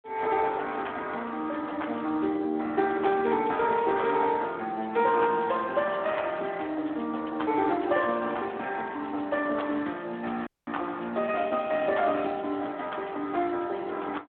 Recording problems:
telephone audio; 190 Hz to 3.5 kHz, Speex
dropout; at 10 s

